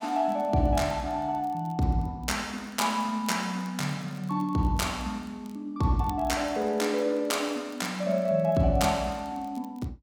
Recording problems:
crackle; vinyl, SNR 29 dB

